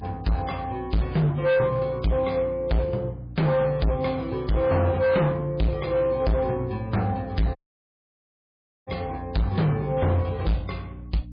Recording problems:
lossy codec; MP3, log-spectral distance 2 dB, nothing above 4.2 kHz
distortion; hard clipping, signal-to-distortion ratio 7 dB
electrical hum; 60 Hz, harmonics up to 300 Hz, SNR 17 dB
audio cutting out; at 7.5 s for 1.5 s

